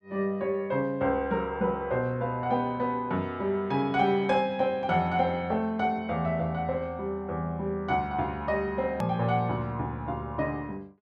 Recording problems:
click at an edit; at 9 s

